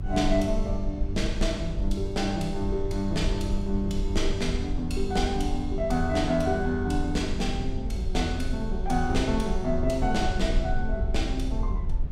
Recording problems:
electrical hum; 50 Hz, harmonics up to 450 Hz, SNR 20 dB
low-frequency rumble; below 56 Hz, SNR 4 dB

